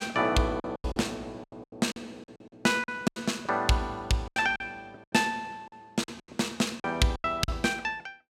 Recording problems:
packet loss; 14% of the sound replaced, filled with silence

